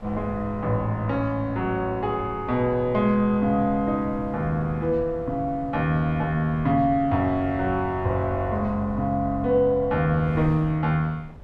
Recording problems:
wind noise; below 160 Hz, SNR 17 dB

